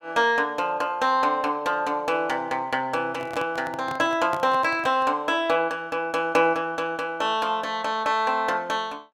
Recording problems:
handling noise; from 3 to 5 s; peak -4 dB vs average level

